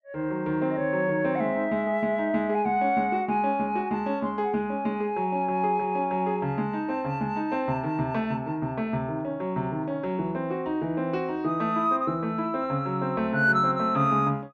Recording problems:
none

